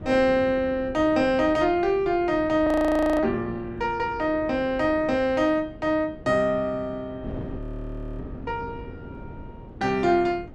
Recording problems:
wind noise; below 310 Hz, SNR 17 dB
audio freezing; at 2.5 s for 0.5 s and at 7.5 s for 0.5 s

